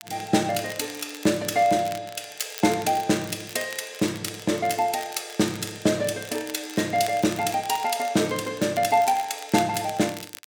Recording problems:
crackling; vinyl, SNR 16 dB

